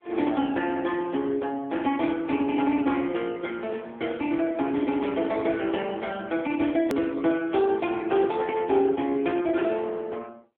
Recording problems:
phone line; 220 Hz to 3.5 kHz, AMR-NB
click at an edit; at 7 s

